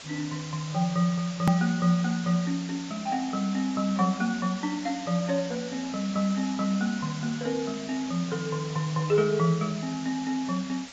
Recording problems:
lossy codec; AAC, log-spectral distance 8 dB, nothing above 13.3 kHz
hiss; slope 0 dB per octave, SNR 13 dB
hard cut with a click; at 1.5 s

